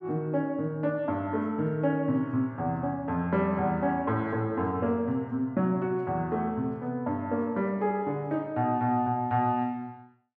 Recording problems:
none

